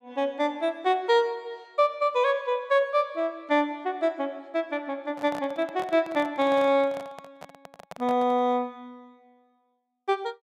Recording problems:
handling noise; from 5 to 8.5 s; peak -9 dB vs average level

